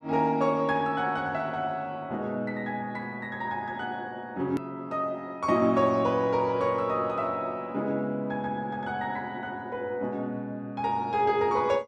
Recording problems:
edit click; at 4.5 s

